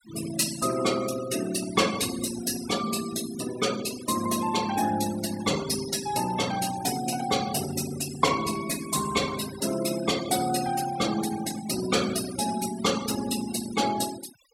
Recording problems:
denoising artefacts; signal-to-artefact ratio 12 dB

